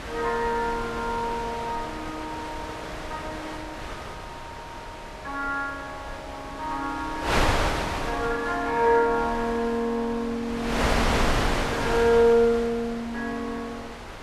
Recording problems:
wind noise; below 1.8 kHz, SNR 4 dB

